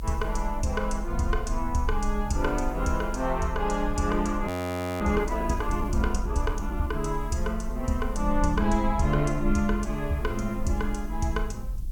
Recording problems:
background hiss; slope +4 dB per octave, SNR 27 dB
low-frequency rumble; below 52 Hz, strongest tone 24 Hz, SNR 5 dB
frozen audio; at 4.5 s for 0.5 s

